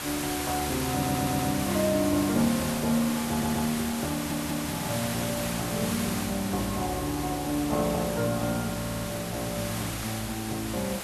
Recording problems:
background hiss; slope -2 dB per octave, SNR 5 dB
stutter; 4 times, first at 1 s

